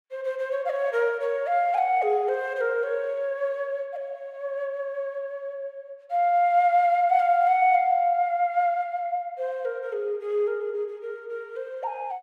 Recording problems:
none

